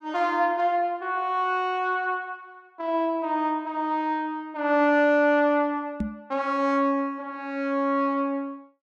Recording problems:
microphone thump; at 6 s; peak 0 dB vs average level

